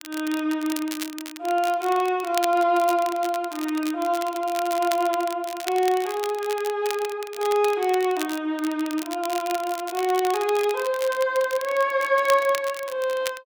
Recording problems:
crackle; vinyl, SNR 13 dB

